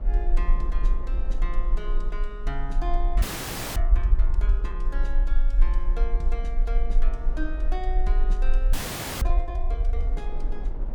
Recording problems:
rumble; below 42 Hz, strongest tone 20 Hz, SNR -10 dB
wind on the microphone; below 470 Hz, SNR 9 dB
audio freezing; at 3 s for 0.5 s and at 8.5 s

